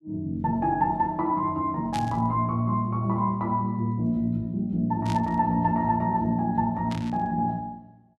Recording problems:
burst of static; at 2 s, at 5 s and at 7 s; peak -7 dB vs average level

